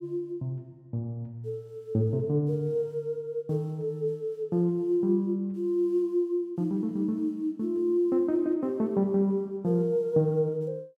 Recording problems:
none

